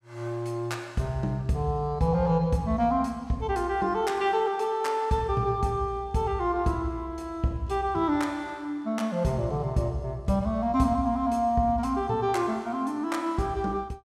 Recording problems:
none

